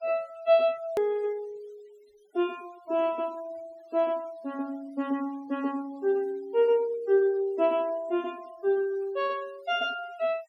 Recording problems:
denoising artefacts; signal-to-artefact ratio 25 dB
hard cut with a click; at 1 s

